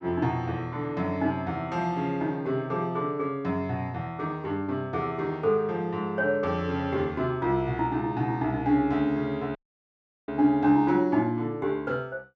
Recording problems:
audio cutting out; at 9.5 s for 0.5 s

